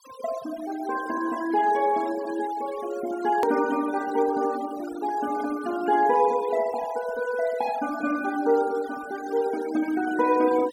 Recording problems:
noise reduction artefacts; signal-to-artefact ratio 16 dB
edit click; at 3.5 s

